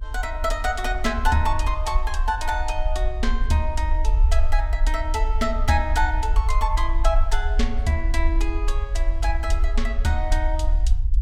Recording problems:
rumble; below 50 Hz, SNR -1 dB

